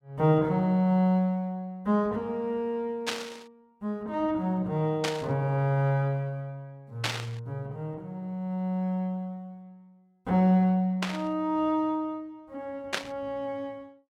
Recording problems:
static burst; 5 times, first at 3 s; peak +4 dB vs average level

